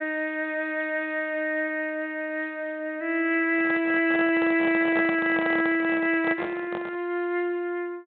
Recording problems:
treble cut off; nothing above 4 kHz
handling noise; from 3.5 to 7 s; peak -4 dB vs average level

